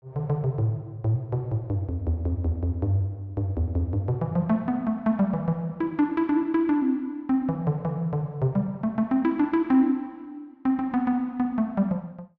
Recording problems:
none

